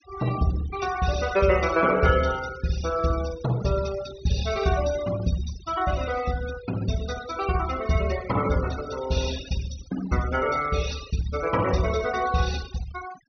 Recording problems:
low-pass filter; nothing above 6.3 kHz
noise reduction artefacts; signal-to-artefact ratio 13 dB

